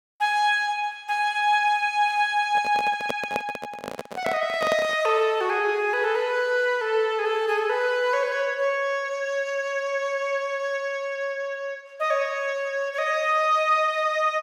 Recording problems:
microphone handling noise; from 2.5 to 5 s; peak -1 dB vs average level

